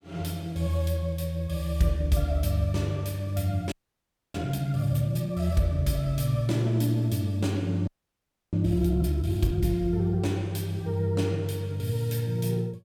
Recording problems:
frozen audio; at 3.5 s for 0.5 s and at 8 s for 0.5 s

